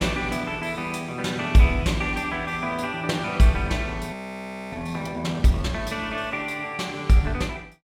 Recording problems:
audio freezing; at 4 s for 0.5 s

